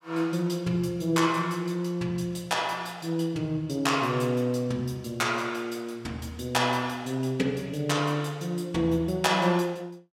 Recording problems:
none

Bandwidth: 16 kHz